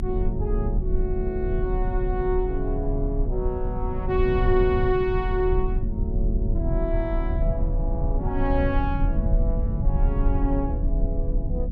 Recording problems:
low-frequency rumble; below 74 Hz, strongest tone 34 Hz, SNR -1 dB

